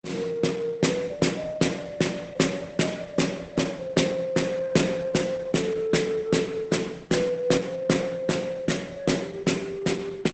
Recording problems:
lossy compression; Opus, log-spectral distance 4 dB, nothing above 8 kHz

